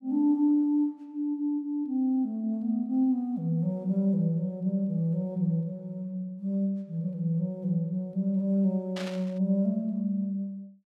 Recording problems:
burst of static; at 9 s; peak -7 dB vs average level

